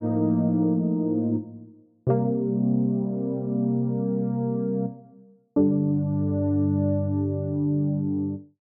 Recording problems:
none

